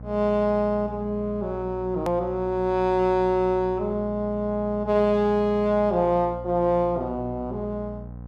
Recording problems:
hum; 60 Hz, harmonics up to 1 kHz, SNR 14 dB
hard cut with a click; at 2 s

